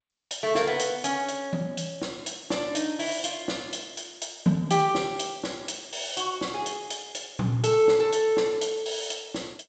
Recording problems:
lossy codec; G.722, log-spectral distance 6 dB, nothing above 7.6 kHz

